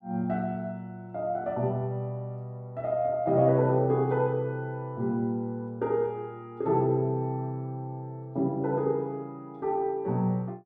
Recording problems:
none

